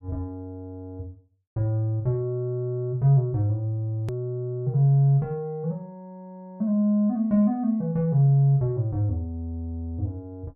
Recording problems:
edit click; at 4 s

